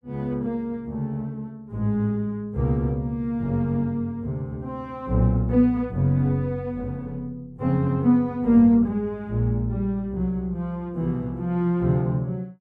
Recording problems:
none

